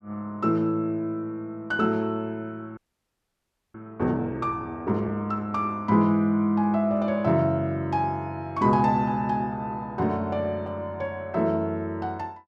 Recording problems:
audio freezing; at 3 s for 1 s

